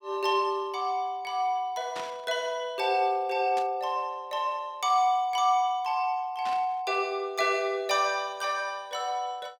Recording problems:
burst of static; at 2 s, at 3.5 s and at 6.5 s; peak -7 dB vs average level

